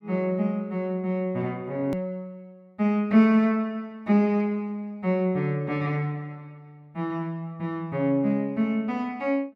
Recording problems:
hard cut with a click; at 2 s

